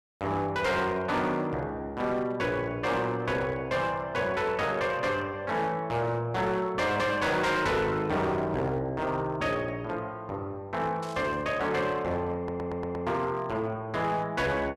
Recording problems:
distorted audio; hard clipping, signal-to-distortion ratio 10 dB
burst of static; at 11 s; peak -12 dB vs average level
audio stuttering; at 12 s

